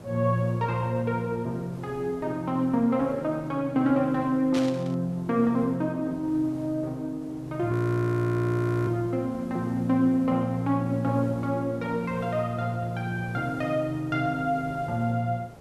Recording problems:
background hiss; SNR 19 dB
burst of static; at 4.5 s; peak -5 dB vs average level
audio freezing; at 7.5 s for 1 s

